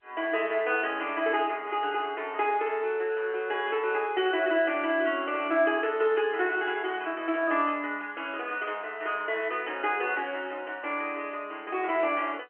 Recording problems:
telephone audio; 300 Hz to 3.2 kHz, G.711

